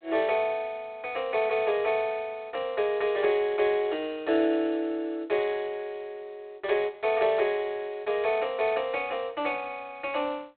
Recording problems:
phone line; 280 Hz to 3.9 kHz, G.726

